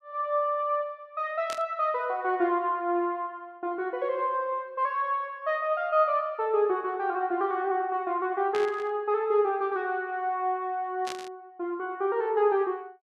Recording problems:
static burst; at 1.5 s, at 8.5 s and at 11 s; peak -5 dB vs average level

